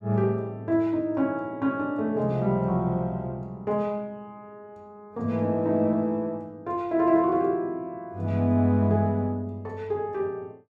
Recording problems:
none

